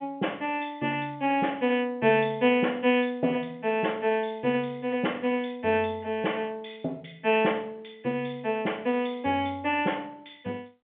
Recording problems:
phone line; 190 Hz to 3.4 kHz, G.711

